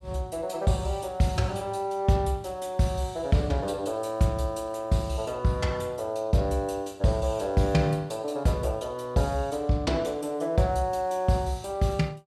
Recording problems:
none

